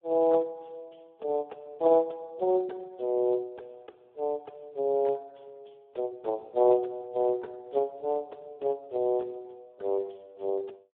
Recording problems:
telephone audio; 320 Hz to 3.7 kHz, Speex

